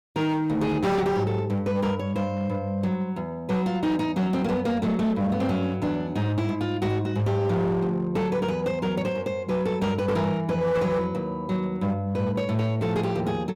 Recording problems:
distortion; hard clipping, signal-to-distortion ratio 11 dB

